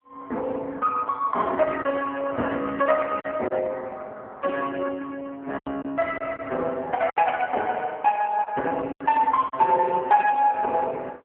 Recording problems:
phone line; 300 Hz to 2.2 kHz, AMR-NB
packet loss; 4% of the sound replaced, filled with silence

